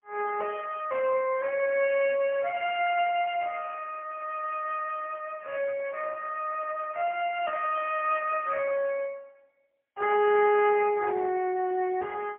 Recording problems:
telephone audio; 300 Hz to 3.3 kHz, AMR-NB, then MP3

